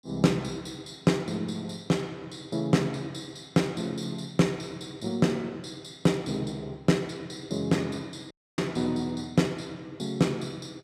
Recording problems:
audio cutting out; at 8.5 s

